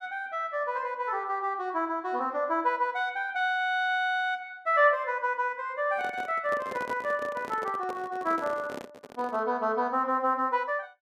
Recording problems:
handling noise; from 6 to 9.5 s; peak -6 dB vs average level

